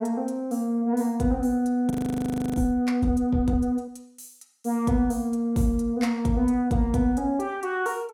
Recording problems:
audio freezing; at 2 s for 0.5 s

